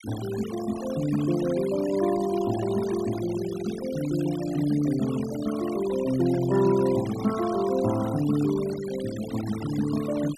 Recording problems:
noise reduction artefacts; signal-to-artefact ratio 14 dB

